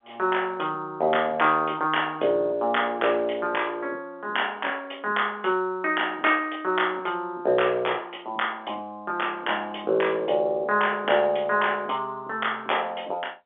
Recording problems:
telephone audio; 260 Hz to 3.5 kHz, G.711

